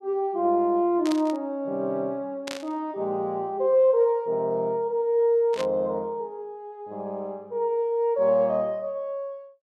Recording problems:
static burst; at 1 s, at 2.5 s and at 5.5 s; peak -5 dB vs average level

